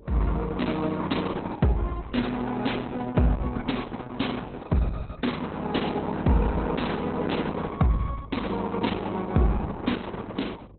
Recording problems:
lossy compression; Opus, log-spectral distance 4 dB, nothing above 4.1 kHz
hum; 50 Hz, harmonics up to 550 Hz, SNR 25 dB

